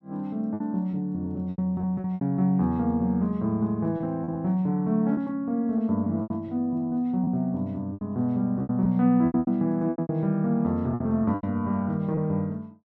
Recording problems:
lost packets; 10% of the sound replaced, filled with repeated pitch periods

